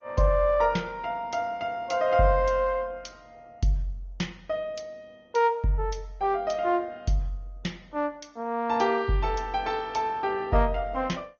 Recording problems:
lossy compression; MP2, then Opus, log-spectral distance 3 dB, nothing above 6.5 kHz

